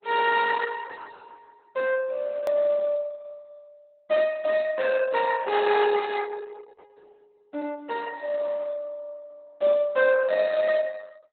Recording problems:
lossy compression; Opus, log-spectral distance 3 dB, nothing above 3.9 kHz
click at an edit; at 2.5 s

